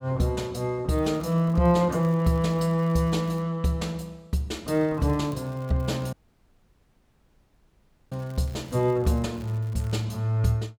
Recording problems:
crackling; from 1 to 3.5 s and from 4.5 to 10 s; loose cable, SNR 29 dB
dropout; at 6 s for 2 s

